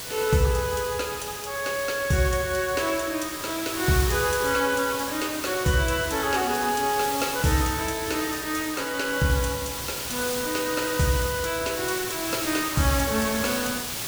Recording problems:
background hiss; slope -1 dB per octave, SNR 6 dB

